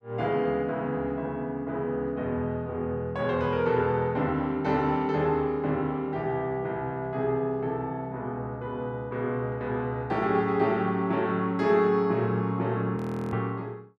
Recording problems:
audio freezing; at 13 s

